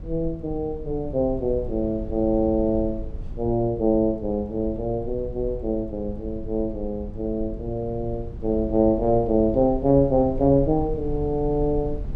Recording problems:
rumble; below 82 Hz, SNR 12 dB

